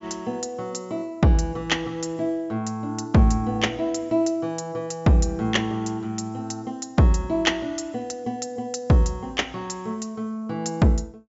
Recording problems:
treble cut off; nothing above 8 kHz

